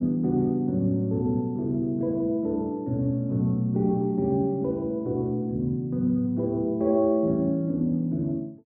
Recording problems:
none

